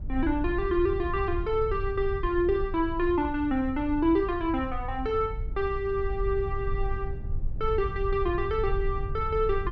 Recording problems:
low-frequency rumble; below 72 Hz, SNR 7 dB

